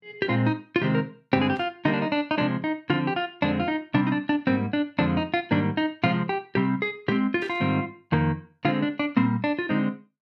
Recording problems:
burst of static; at 1.5 s and at 7.5 s; peak -15 dB vs average level

